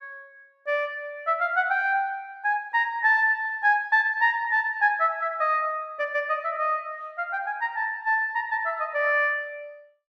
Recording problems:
none

